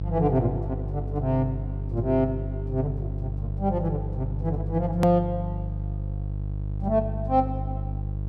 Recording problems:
hum; 50 Hz, harmonics up to 450 Hz, SNR 4 dB
click at an edit; at 5 s

